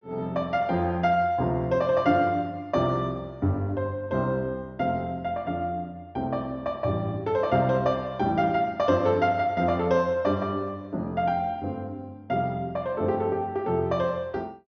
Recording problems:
treble cut off; nothing above 6.5 kHz

